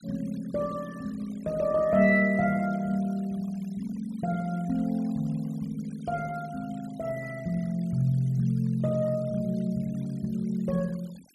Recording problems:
noise reduction artefacts; signal-to-artefact ratio 25 dB

